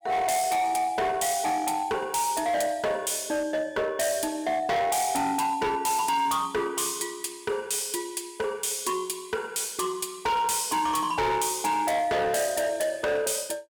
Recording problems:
distorted audio; hard clipping, signal-to-distortion ratio 8 dB

